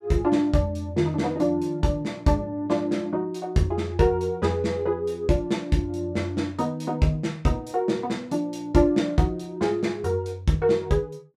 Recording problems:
none

